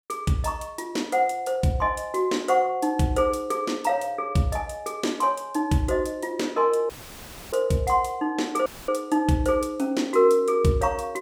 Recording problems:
audio cutting out; at 7 s for 0.5 s and at 8.5 s; filled with static

